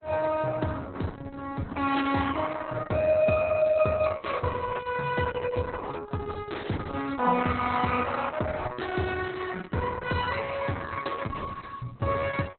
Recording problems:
lossy codec; Opus, log-spectral distance 6 dB, nothing above 4.1 kHz

